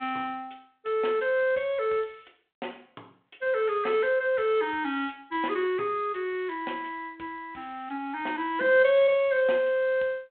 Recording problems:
phone line; 300 Hz to 3.6 kHz, G.726

